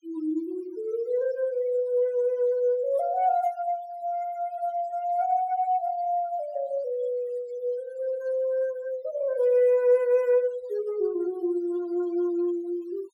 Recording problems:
denoising artefacts; signal-to-artefact ratio 22 dB

